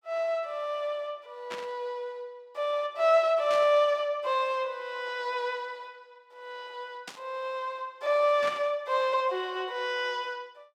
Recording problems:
burst of static; 4 times, first at 1.5 s; peak -6 dB vs average level

